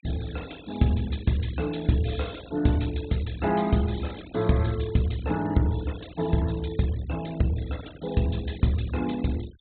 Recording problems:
treble cut off; nothing above 4 kHz
noise reduction artefacts; signal-to-artefact ratio 20 dB

